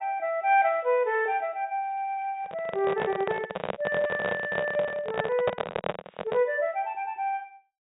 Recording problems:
treble missing; nothing above 4 kHz
microphone handling noise; from 2.5 to 6.5 s; peak +4 dB vs average level

